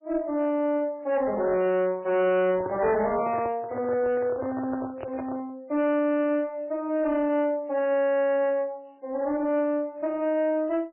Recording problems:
lossy codec; MP3, log-spectral distance 2 dB, nothing above 2.7 kHz
distortion; soft clipping, signal-to-distortion ratio 11 dB
microphone handling noise; from 2.5 to 5.5 s; peak -5 dB vs average level

